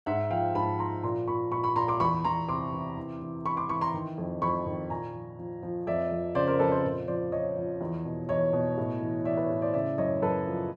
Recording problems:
none

